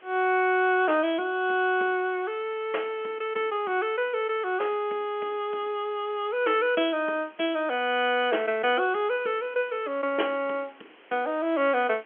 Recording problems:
telephone audio; 280 Hz to 3.3 kHz, G.711
background hiss; SNR 28 dB

